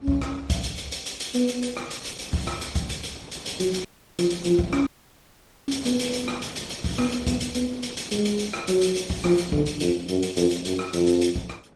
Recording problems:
lossy compression; Vorbis, then Opus, log-spectral distance 6 dB
wind noise; below 630 Hz, SNR 19 dB
audio cutting out; at 4 s and at 5 s for 1 s

